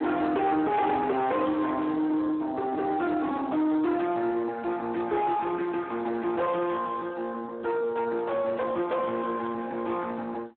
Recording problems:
phone line; 260 Hz to 2.8 kHz, Speex
distorted audio; soft clipping, signal-to-distortion ratio 9 dB

